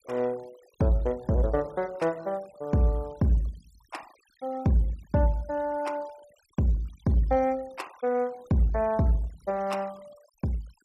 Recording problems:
noise reduction artefacts; signal-to-artefact ratio 26 dB

